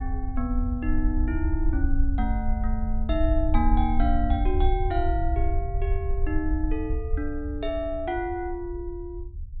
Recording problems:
treble cut off; nothing above 4 kHz
rumble; below 62 Hz, SNR -2 dB

